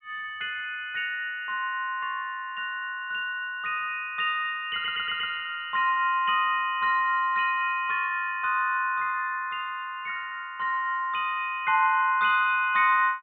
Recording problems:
low-pass filter; nothing above 4 kHz
audio stuttering; at 4.5 s

